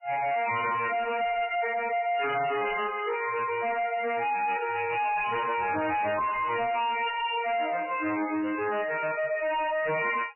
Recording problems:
lossy codec; MP3, log-spectral distance 5 dB, nothing above 2.4 kHz
distorted audio; hard clipping, signal-to-distortion ratio 6 dB

